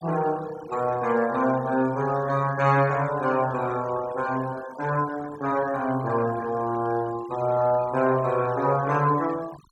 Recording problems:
denoising artefacts; signal-to-artefact ratio 19 dB

